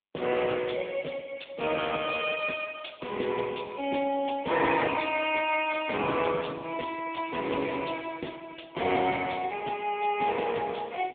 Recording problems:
telephone audio; 240 Hz to 3.5 kHz, AMR-NB

